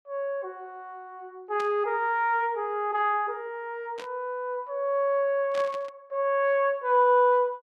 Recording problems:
static burst; at 1.5 s, at 4 s and at 5.5 s; peak -11 dB vs average level

